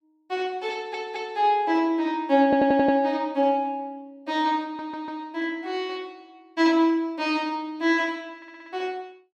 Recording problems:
audio stuttering; 4 times, first at 0.5 s

